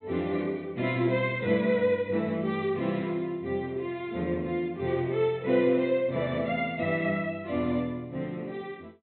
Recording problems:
low-pass filter; nothing above 4.1 kHz

